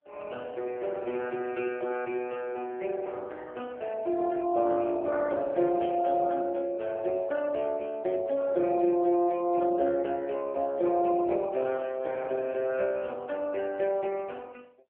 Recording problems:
phone line; 260 Hz to 3.3 kHz, AMR-NB

